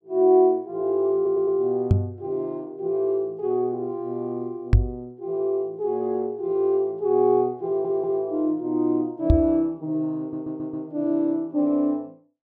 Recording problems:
audio stuttering; at 1 s, at 7.5 s and at 10 s
microphone thump; at 2 s, at 4.5 s and at 9.5 s; peak +10 dB vs average level

